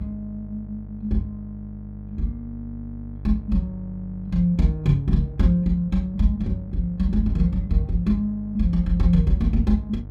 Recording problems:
mains hum; 50 Hz, harmonics up to 450 Hz, SNR 14 dB

